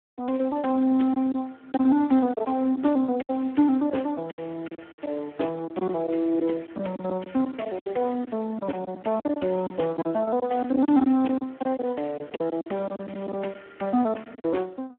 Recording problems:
telephone audio; 220 Hz to 3.2 kHz, Speex
packet loss; 10% of the sound replaced, filled with silence

